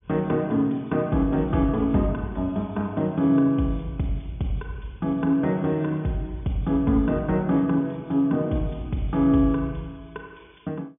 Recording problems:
treble missing; nothing above 3.5 kHz

